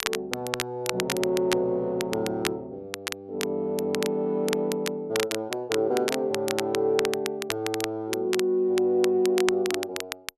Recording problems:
crackle; vinyl, SNR 7 dB

